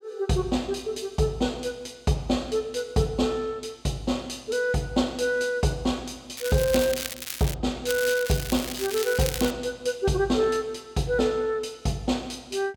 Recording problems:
crackle; from 6.5 to 7.5 s and from 8 to 9.5 s; loose cable, SNR 7 dB

